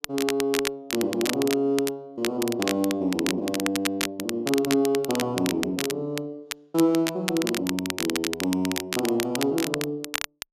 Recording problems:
crackling; vinyl, SNR 5 dB

